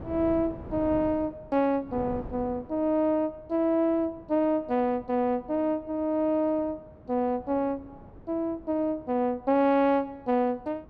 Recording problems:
wind on the microphone; below 450 Hz, SNR 19 dB

